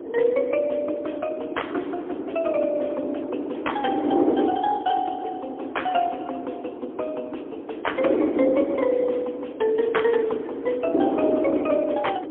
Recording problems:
telephone audio; 260 Hz to 3.4 kHz, AMR-NB, then MP3
wind noise; below 460 Hz, SNR 3 dB

